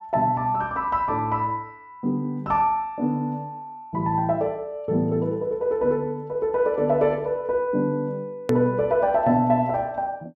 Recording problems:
click at an edit; at 8.5 s

